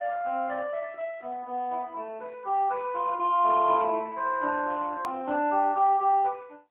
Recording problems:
phone line; 240 Hz to 3.3 kHz, AMR-NB, then MP3
hard cut with a click; at 5 s

